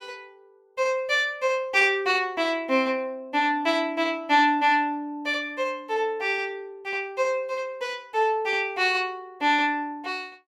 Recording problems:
none

